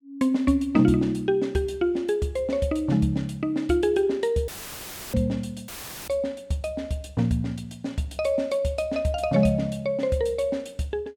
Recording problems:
audio cutting out; at 4.5 s for 0.5 s and at 5.5 s; filled with static

